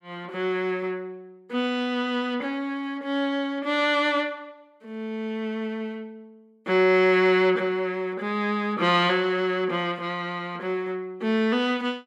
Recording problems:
none

